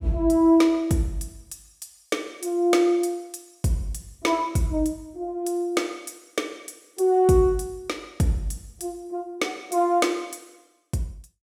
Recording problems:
none

